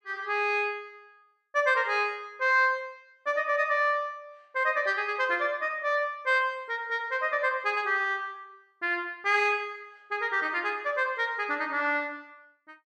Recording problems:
none

